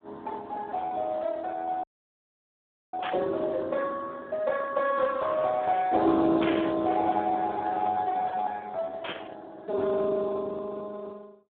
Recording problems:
phone line; 280 Hz to 2.2 kHz, Speex
frozen audio; at 2 s for 1 s
burst of static; at 3 s, at 6.5 s and at 9 s; peak 0 dB vs average level

